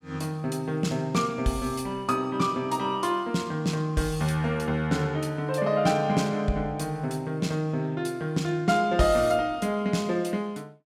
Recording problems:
none

